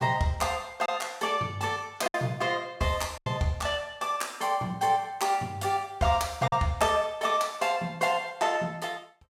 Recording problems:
lost packets; 2% of the sound replaced, filled with silence

